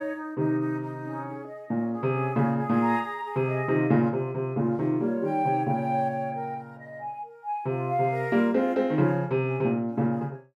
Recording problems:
none

